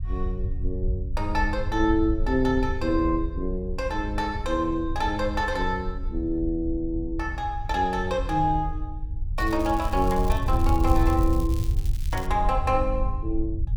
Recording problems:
low-frequency rumble; below 72 Hz, SNR 4 dB
crackle; from 9.5 to 12 s; loose cable, SNR 18 dB

